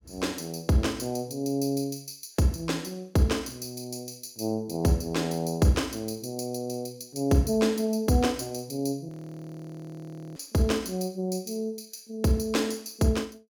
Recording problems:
audio freezing; at 9 s for 1.5 s

